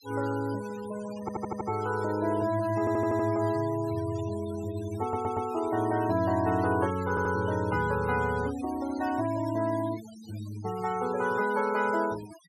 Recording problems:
noise reduction artefacts; signal-to-artefact ratio 17 dB
stutter; 4 times, first at 1 s

